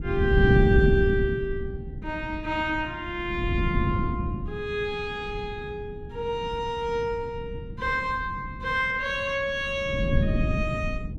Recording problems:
wind on the microphone; below 190 Hz, SNR 1 dB

